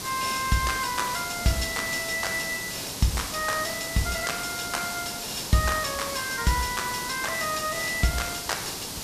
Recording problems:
hiss; SNR 4 dB

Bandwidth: 14.5 kHz